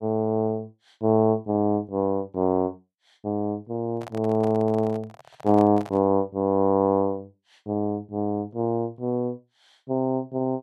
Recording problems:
handling noise; from 4 to 6 s; peak -11 dB vs average level

